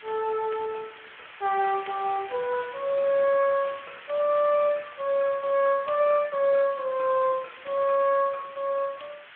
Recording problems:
phone line; 240 Hz to 3.2 kHz, Speex
hiss; SNR 18 dB

